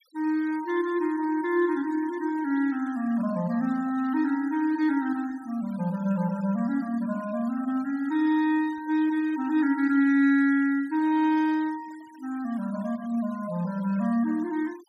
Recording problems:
denoising artefacts; signal-to-artefact ratio 25 dB

